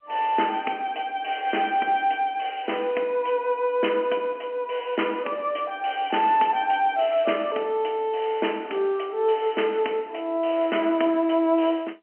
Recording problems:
telephone audio; 260 Hz to 3.1 kHz, G.711

